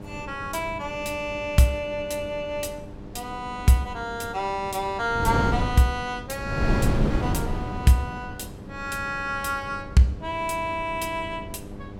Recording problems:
hum; 50 Hz, harmonics up to 1.1 kHz, SNR 18 dB
wind noise; below 290 Hz, SNR 6 dB

